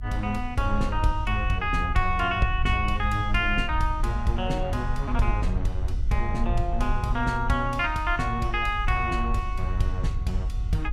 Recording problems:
low-frequency rumble; below 64 Hz, SNR 4 dB

